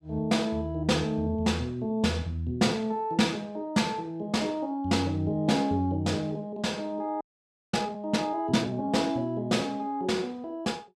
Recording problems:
audio freezing; at 7 s for 0.5 s

